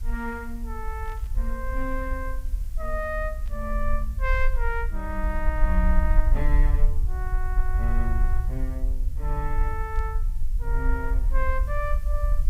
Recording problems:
background hiss; slope -1 dB per octave, SNR 22 dB
rumble; below 50 Hz, strongest tone 22 Hz, SNR -5 dB
burst of static; at 1 s, at 3.5 s and at 10 s; peak -15 dB vs average level

